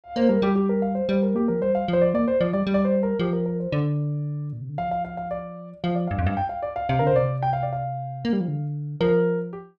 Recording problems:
none

